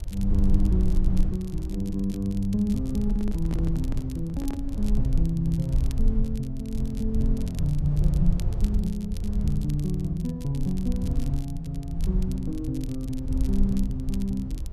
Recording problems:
rumble; below 62 Hz, SNR 1 dB
crackle; vinyl, SNR 21 dB
microphone handling noise; from 3 to 4.5 s; peak -4 dB vs average level

